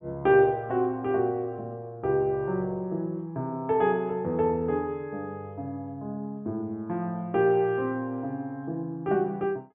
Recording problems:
treble cut off; nothing above 3.5 kHz

